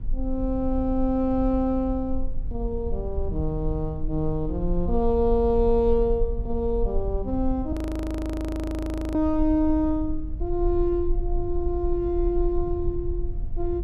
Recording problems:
low-frequency rumble; below 54 Hz, SNR 6 dB
audio freezing; at 7.5 s for 1.5 s

